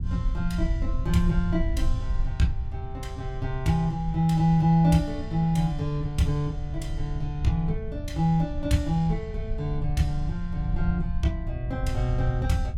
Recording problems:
rumble; below 80 Hz, SNR 6 dB

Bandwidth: 16 kHz